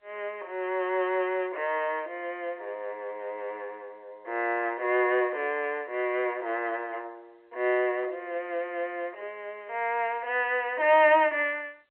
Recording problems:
phone line; 320 Hz to 3.2 kHz, G.711

